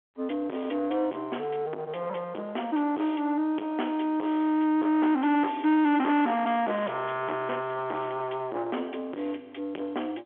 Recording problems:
phone line; 260 Hz to 3.5 kHz, G.711
distorted audio; soft clipping, signal-to-distortion ratio 9 dB

